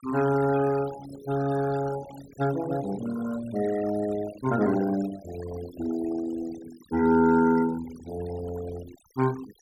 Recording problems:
noise reduction artefacts; signal-to-artefact ratio 15 dB

